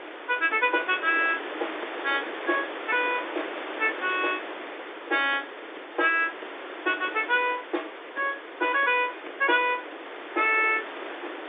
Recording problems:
telephone audio; 260 Hz to 3.6 kHz, G.711
hiss; SNR 10 dB

